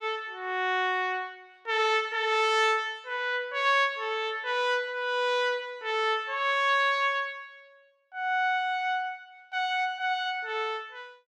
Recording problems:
none

